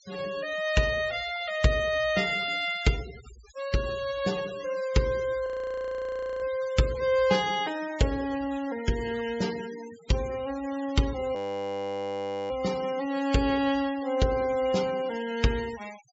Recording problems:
treble missing; nothing above 8 kHz
denoising artefacts; signal-to-artefact ratio 16 dB
frozen audio; at 5.5 s for 1 s and at 11 s for 1 s

